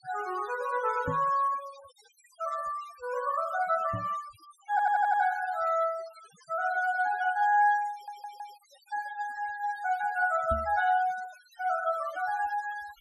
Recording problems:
denoising artefacts; signal-to-artefact ratio 20 dB
microphone thump; at 1 s, at 4 s and at 11 s; peak -2 dB vs average level
audio stuttering; at 4.5 s and at 8 s

